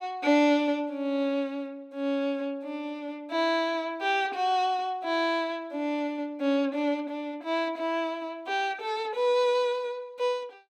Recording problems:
none

